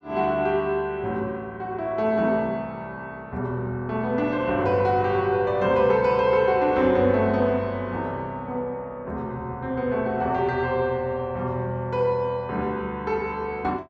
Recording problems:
none

